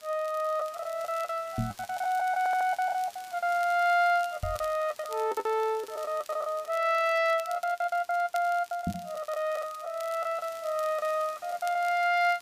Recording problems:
background hiss; slope 0 dB per octave, SNR 24 dB
crackling; vinyl, SNR 22 dB
packet loss; 15% of the sound replaced, filled with the last packet
knock on the microphone; at 1.5 s, at 4.5 s and at 9 s; peak +1 dB vs average level
stutter; at 2.5 s and at 3.5 s

